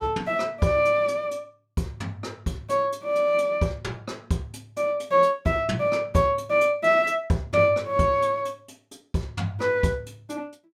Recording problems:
none

